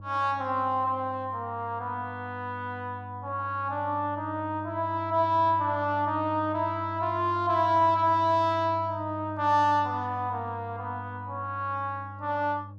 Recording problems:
electrical hum; 50 Hz, harmonics up to 600 Hz, SNR 14 dB

